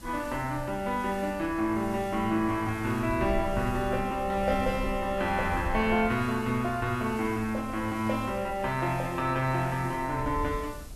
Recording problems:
lossy codec; AAC, log-spectral distance 2 dB
background hiss; slope +3 dB per octave, SNR 22 dB
wind on the microphone; below 98 Hz, SNR 14 dB

